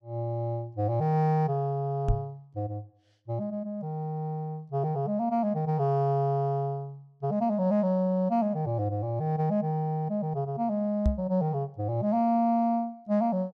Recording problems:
knock on the microphone; at 2 s and at 11 s; peak +6 dB vs average level

